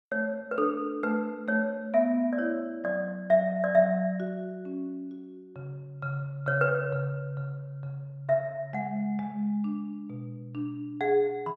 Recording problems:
none

